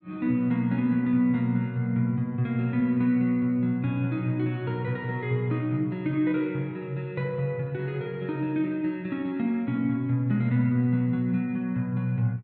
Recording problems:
none

